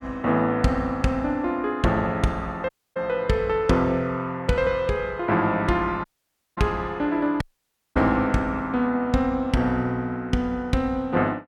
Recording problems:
dropout; at 2.5 s, at 6 s for 0.5 s and at 7.5 s for 0.5 s

